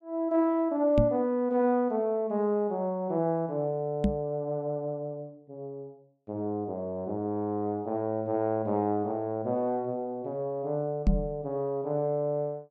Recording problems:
microphone thump; at 1 s, at 4 s and at 11 s; peak +7 dB vs average level

